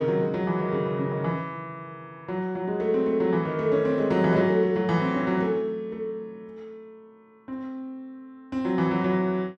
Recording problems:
none

